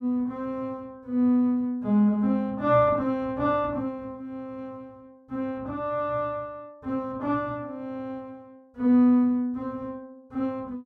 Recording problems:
none

